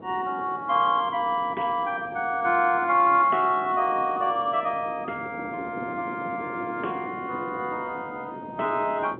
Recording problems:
phone line; 260 Hz to 3.5 kHz, G.711
wind noise; below 490 Hz, SNR 15 dB

